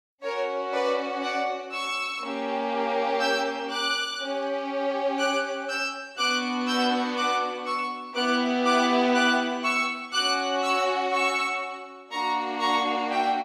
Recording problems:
none

